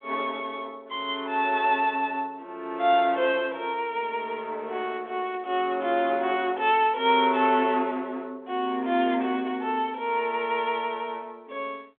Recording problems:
phone line; 220 Hz to 3.5 kHz, G.726

